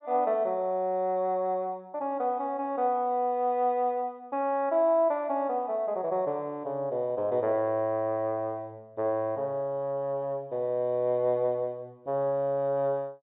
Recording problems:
treble cut off; nothing above 4 kHz

